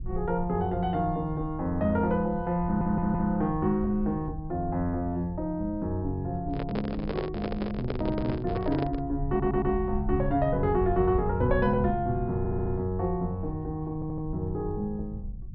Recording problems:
treble missing; nothing above 5.5 kHz
low-frequency rumble; below 92 Hz, SNR 10 dB
audio stuttering; 4 times, first at 2.5 s
microphone handling noise; from 6.5 to 9 s; peak 0 dB vs average level

